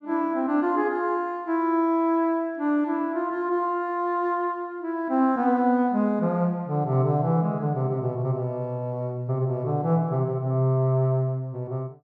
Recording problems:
none

